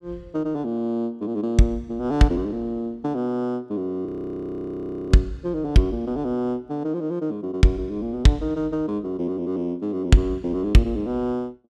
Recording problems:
audio freezing; at 4 s for 1 s

